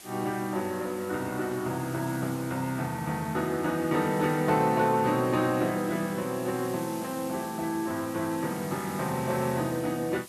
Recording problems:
background hiss; slope 0 dB per octave, SNR 16 dB

